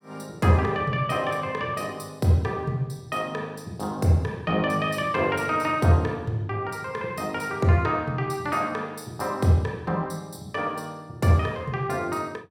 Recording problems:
none

